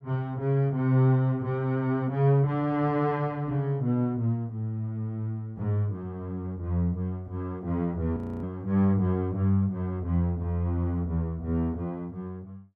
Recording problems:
frozen audio; at 8 s

